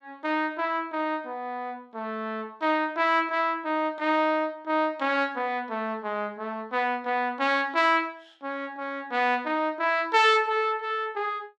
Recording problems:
none

